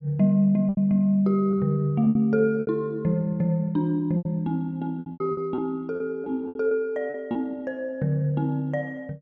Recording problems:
packet loss; 9% of the sound replaced, filled with repeated pitch periods

